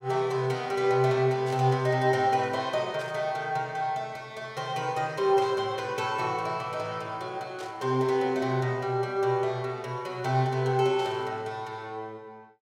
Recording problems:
burst of static; 5 times, first at 1.5 s; peak -13 dB vs average level

